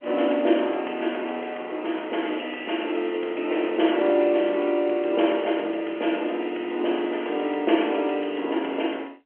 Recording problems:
phone line; 260 Hz to 3.3 kHz, G.711

